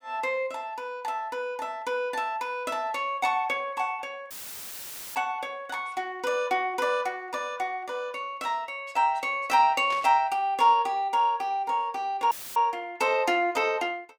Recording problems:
dropout; at 4.5 s for 1 s and at 12 s; filled with static
burst of static; at 10 s; peak -8 dB vs average level

